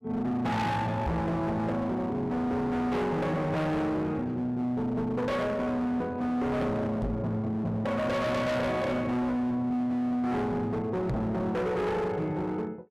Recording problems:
distorted audio; hard clipping, signal-to-distortion ratio 6 dB
knock on the microphone; at 1 s, at 7 s and at 11 s; peak +2 dB vs average level

